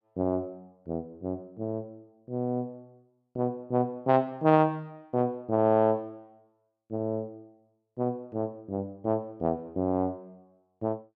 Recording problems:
none

